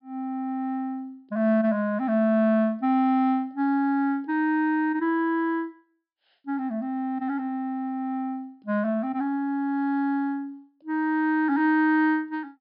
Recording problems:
low-pass filter; nothing above 5.5 kHz

